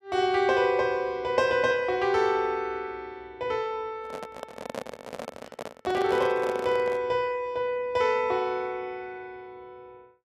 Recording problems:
microphone handling noise; from 4 to 7 s; peak -3 dB vs average level

